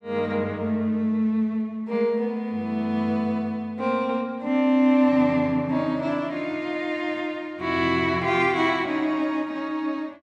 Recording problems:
none

